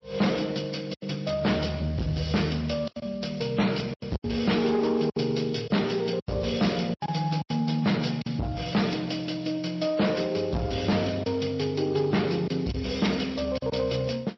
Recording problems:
lossy codec; MP3, then Speex, log-spectral distance 5 dB
distortion; soft clipping, signal-to-distortion ratio 6 dB
lost packets; 6% of the sound replaced, filled with silence

